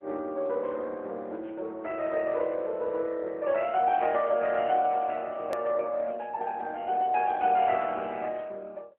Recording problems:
phone line; 260 Hz to 3.4 kHz, AMR-NB
hard cut with a click; at 5.5 s

